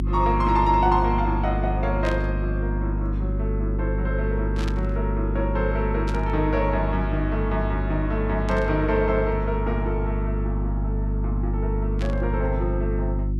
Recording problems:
hum; 50 Hz, harmonics up to 350 Hz, SNR 0 dB
burst of static; 5 times, first at 2 s; peak -6 dB vs average level

